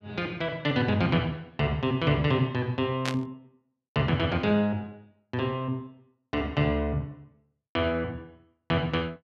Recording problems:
static burst; at 3 s; peak +1 dB vs average level

